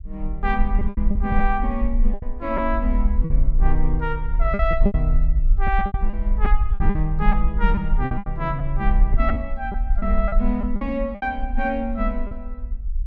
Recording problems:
rumble; below 46 Hz, SNR -1 dB
lost packets; 10% of the sound replaced, filled with repeated pitch periods

